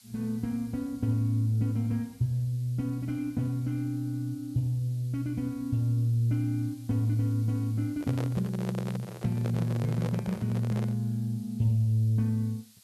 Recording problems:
hiss; slope +4 dB per octave, SNR 26 dB
microphone handling noise; from 8 to 11 s; peak -5 dB vs average level

